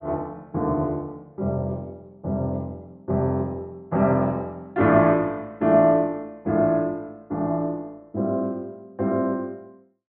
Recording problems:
treble cut off; nothing above 4 kHz

